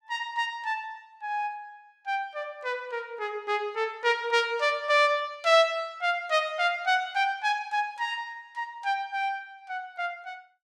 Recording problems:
none

